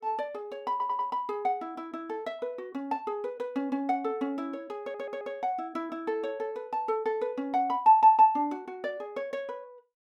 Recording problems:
stutter; at 0.5 s and at 5 s

